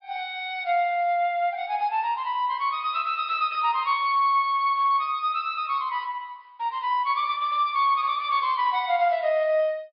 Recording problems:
treble missing; nothing above 5.5 kHz

